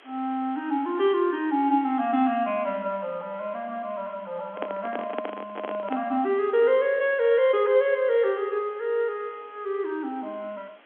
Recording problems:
telephone audio; 220 Hz to 3.4 kHz, G.711
hiss; SNR 27 dB
microphone handling noise; from 4.5 to 6 s; peak -2 dB vs average level

